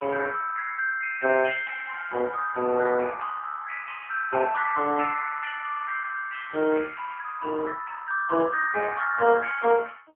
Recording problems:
phone line; 260 Hz to 3 kHz, AMR-NB

